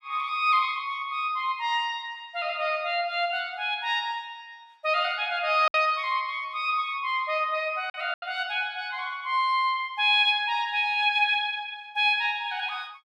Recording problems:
packet loss; 1.4% of the sound replaced, filled with silence

